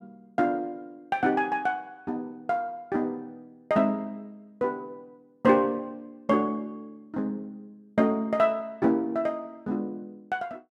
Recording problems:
none

